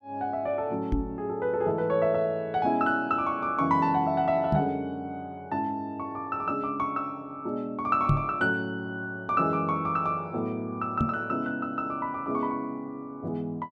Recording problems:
microphone thump; 4 times, first at 1 s; peak +7 dB vs average level

